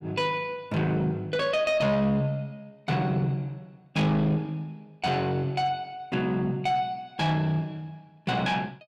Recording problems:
distortion; soft clipping, signal-to-distortion ratio 11 dB

